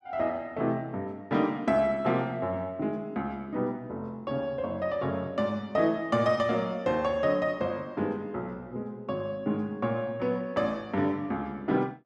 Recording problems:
none

